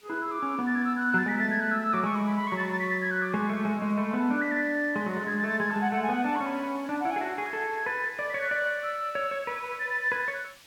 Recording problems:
background hiss; SNR 26 dB

